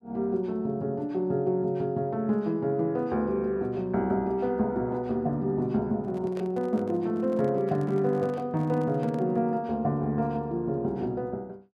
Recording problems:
microphone handling noise; from 6 to 9.5 s; peak -11 dB vs average level

